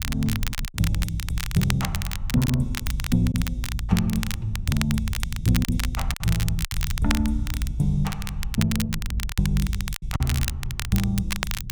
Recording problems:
low-frequency rumble; below 96 Hz, SNR 7 dB
crackle; vinyl, SNR 7 dB
packet loss; 4% of the sound replaced, filled with silence

